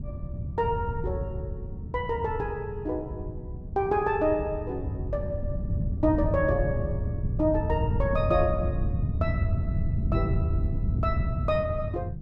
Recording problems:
wind on the microphone; below 130 Hz, SNR 1 dB

